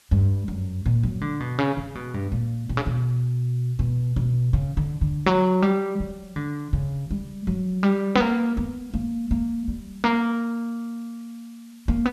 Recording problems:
background hiss; slope +2 dB per octave, SNR 30 dB

